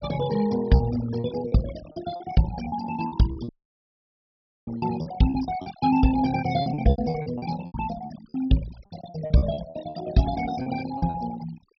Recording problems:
treble cut off; nothing above 5.5 kHz
denoising artefacts; signal-to-artefact ratio 12 dB
lost packets; 13% of the sound replaced, filled with repeated pitch periods
dropout; at 3.5 s for 1 s

